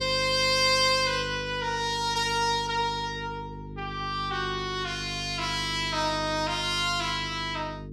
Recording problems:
electrical hum; 50 Hz, harmonics up to 450 Hz, SNR 13 dB

